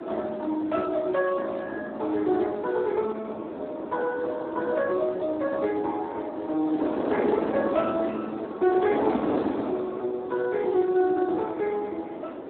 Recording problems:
telephone audio; 240 Hz to 3.3 kHz, Speex
wind noise; below 640 Hz, SNR 6 dB

